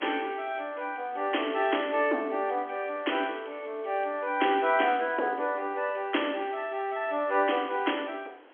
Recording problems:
telephone audio; 260 Hz to 3.3 kHz, G.711
hiss; SNR 25 dB

